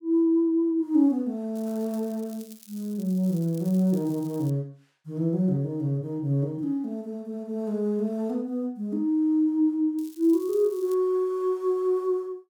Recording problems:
crackle; from 1.5 to 4.5 s and at 10 s; loose cable, SNR 24 dB

